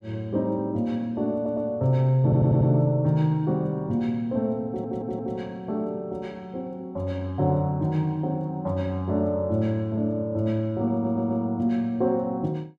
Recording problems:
audio stuttering; 4 times, first at 1.5 s

